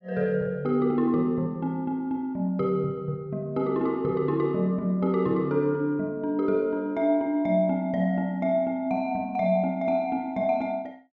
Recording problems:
none

